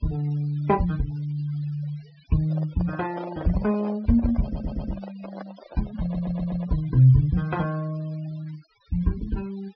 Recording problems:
treble missing; nothing above 5.5 kHz
denoising artefacts; signal-to-artefact ratio 22 dB
microphone handling noise; from 2.5 to 7 s; peak -7 dB vs average level
audio stuttering; at 4.5 s and at 6 s

